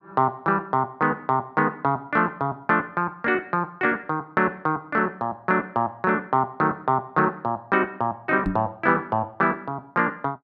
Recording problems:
microphone bump; at 8.5 s; peak +1 dB vs average level

